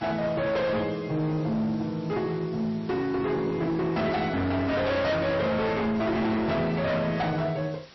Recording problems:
lossy codec; MP3, log-spectral distance 4 dB, nothing above 5.7 kHz
distortion; hard clipping, uneven, signal-to-distortion ratio 7 dB
hiss; slope -1 dB per octave, SNR 24 dB

